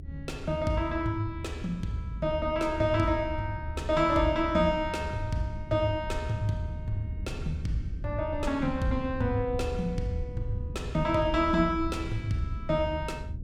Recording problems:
low-frequency rumble; below 90 Hz, SNR 8 dB

